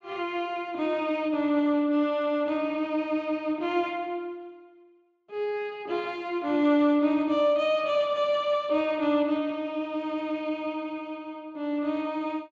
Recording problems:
lossy codec; Speex, log-spectral distance 2 dB, nothing above 7.3 kHz

